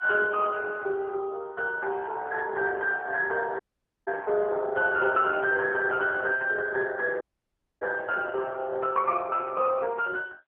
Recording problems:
telephone audio; 340 Hz to 3 kHz, AMR-NB
audio cutting out; at 3.5 s and at 7 s for 0.5 s

